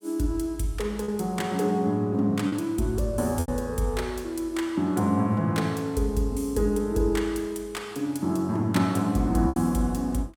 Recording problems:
lost packets; 2% of the sound replaced, filled with repeated pitch periods

